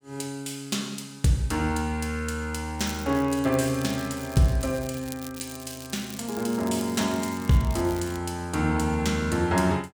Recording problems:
crackling; from 3 to 8 s; loose cable, SNR 16 dB

